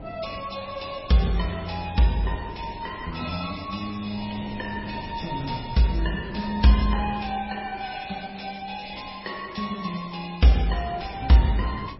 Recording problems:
codec artefacts; MP3, log-spectral distance 8 dB, nothing above 5.5 kHz
wind on the microphone; below 390 Hz, SNR 17 dB
crackling; at 3 s and from 3.5 to 6 s; loose cable, SNR 26 dB

